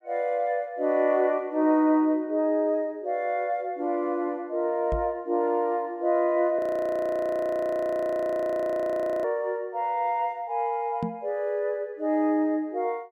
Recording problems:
microphone thump; at 5 s and at 11 s; peak -1 dB vs average level
frozen audio; at 6.5 s for 2.5 s

